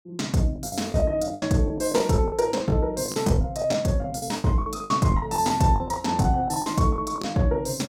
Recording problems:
lost packets; 15% of the sound replaced, filled with the last packet

